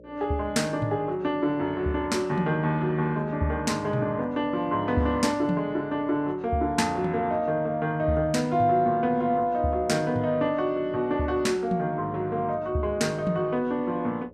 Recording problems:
hum; 60 Hz, harmonics up to 600 Hz, SNR 24 dB

